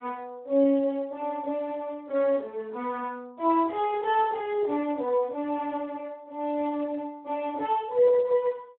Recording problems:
telephone audio; 280 Hz to 3.5 kHz, Speex

